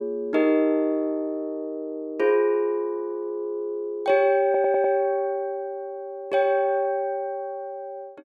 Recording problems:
stutter; at 4.5 s

